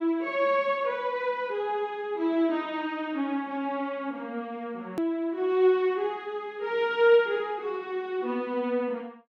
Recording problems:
edit click; at 5 s

